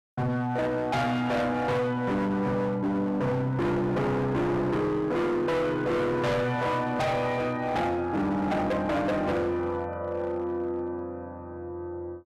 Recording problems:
distortion; hard clipping, signal-to-distortion ratio 6 dB

